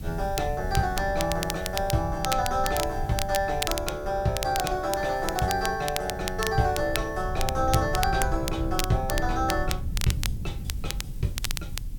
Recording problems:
hiss; slope 0 dB per octave, SNR 26 dB
low-frequency rumble; below 94 Hz, SNR 8 dB
crackling; vinyl, SNR 7 dB

